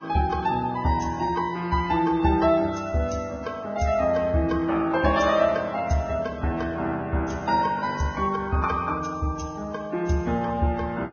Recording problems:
codec artefacts; Vorbis, log-spectral distance 3 dB, nothing above 6.5 kHz

